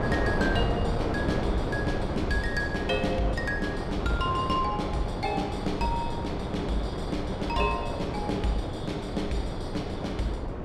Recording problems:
wind on the microphone; below 590 Hz, SNR 1 dB

